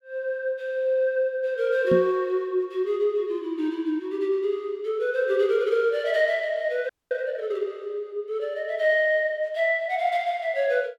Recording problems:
knock on the microphone; at 2 s; peak +2 dB vs average level
audio freezing; at 7 s

